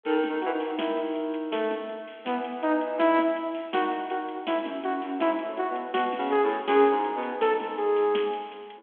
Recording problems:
telephone audio; 220 Hz to 3.4 kHz, G.726

